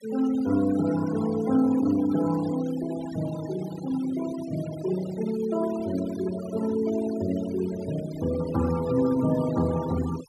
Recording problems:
noise reduction artefacts; signal-to-artefact ratio 16 dB

